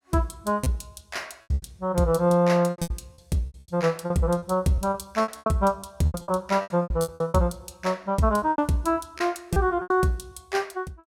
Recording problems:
packet loss; 15% of the sound replaced, filled with repeated pitch periods

